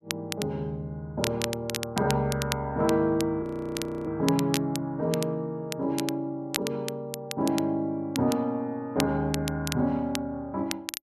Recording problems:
crackle; vinyl, SNR 8 dB
frozen audio; at 3.5 s for 0.5 s

